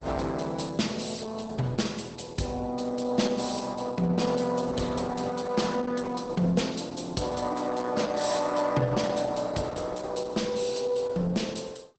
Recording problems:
lossy codec; Opus, log-spectral distance 5 dB, nothing above 8.2 kHz

